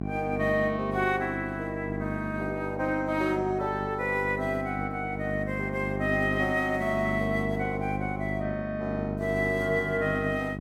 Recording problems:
mains hum; 50 Hz, harmonics up to 800 Hz, SNR 6 dB

